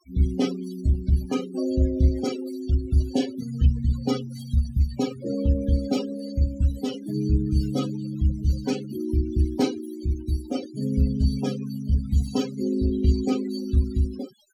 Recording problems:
denoising artefacts; signal-to-artefact ratio 12 dB

